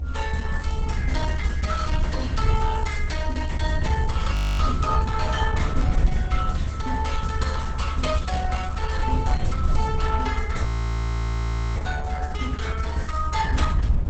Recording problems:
lossy codec; Opus, log-spectral distance 4 dB
hum; 60 Hz, harmonics up to 720 Hz, SNR 15 dB
low-frequency rumble; below 72 Hz, strongest tone 70 Hz, SNR 1 dB
wind on the microphone; below 100 Hz, SNR 0 dB
audio freezing; at 4.5 s and at 11 s for 1 s

